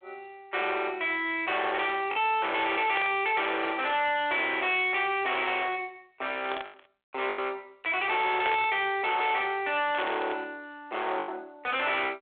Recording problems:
phone line; 320 Hz to 3.9 kHz, G.726
distortion; hard clipping, signal-to-distortion ratio 7 dB
lost packets; 2% of the sound replaced, filled with the last packet
static burst; 4 times, first at 3 s; peak 0 dB vs average level

